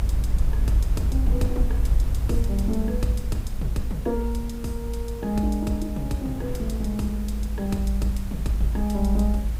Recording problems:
hum; 50 Hz, harmonics up to 450 Hz, SNR 27 dB
background hiss; slope -3 dB per octave, SNR 17 dB
low-frequency rumble; below 56 Hz, strongest tone 54 Hz, SNR -2 dB
wind noise; below 190 Hz, SNR 16 dB

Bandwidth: 15.5 kHz